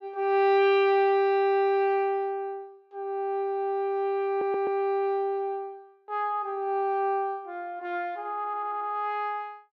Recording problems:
audio stuttering; at 4.5 s and at 8.5 s

